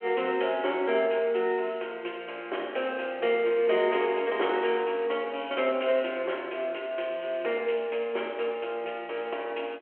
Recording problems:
phone line; 300 Hz to 3.3 kHz, G.726

